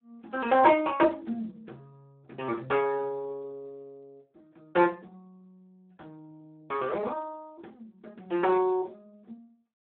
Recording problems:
telephone audio; 280 Hz to 3.4 kHz, Speex

